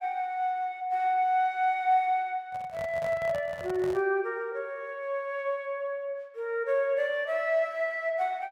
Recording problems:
microphone handling noise; from 2.5 to 4 s; peak -8 dB vs average level

